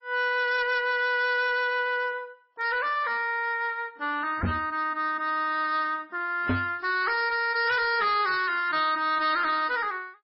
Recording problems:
lossy compression; MP3, then AAC, log-spectral distance 2 dB, nothing above 5.5 kHz
distorted audio; hard clipping, signal-to-distortion ratio 10 dB
microphone bump; at 4.5 s and at 6.5 s; peak +2 dB vs average level

